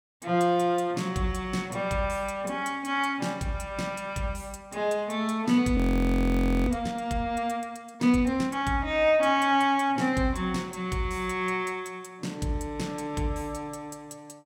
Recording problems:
audio freezing; at 6 s for 1 s

